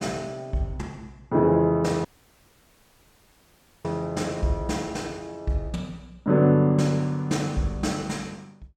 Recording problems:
audio cutting out; at 2 s for 2 s

